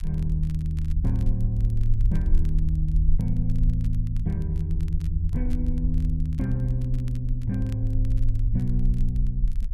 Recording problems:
rumble; below 48 Hz, SNR 1 dB
crackling; vinyl, SNR 29 dB

